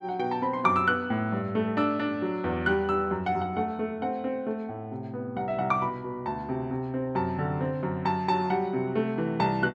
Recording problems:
none

